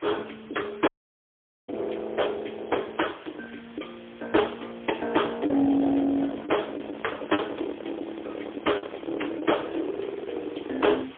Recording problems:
telephone audio; 240 Hz to 3.4 kHz, AMR-NB, then MP3
distortion; hard clipping, signal-to-distortion ratio 12 dB
hiss; SNR 20 dB
packet loss; 4% of the sound replaced, filled with the last packet
audio cutting out; at 1 s for 1 s

